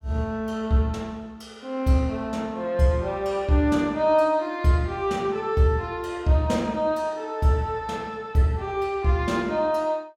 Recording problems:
none

